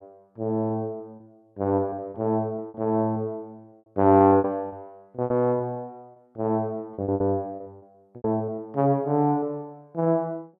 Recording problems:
packet loss; 11% of the sound replaced, filled with repeated pitch periods

